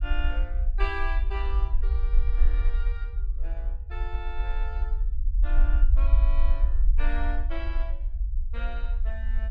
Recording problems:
rumble; below 48 Hz, strongest tone 20 Hz, SNR -11 dB

